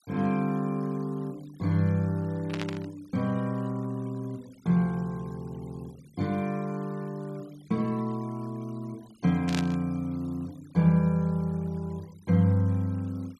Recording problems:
noise reduction artefacts; signal-to-artefact ratio 27 dB
burst of static; at 2.5 s and at 9.5 s; peak -1 dB vs average level

